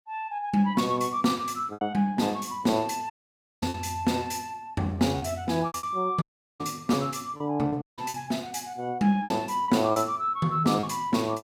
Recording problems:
lost packets; 6% of the sound replaced, filled with repeated pitch periods
dropout; at 3 s for 0.5 s, at 6 s and at 8 s

